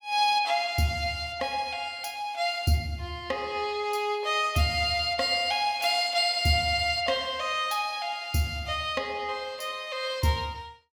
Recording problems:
none

